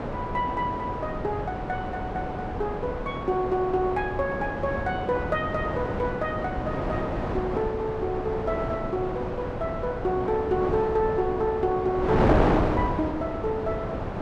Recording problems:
wind on the microphone; below 770 Hz, SNR 2 dB

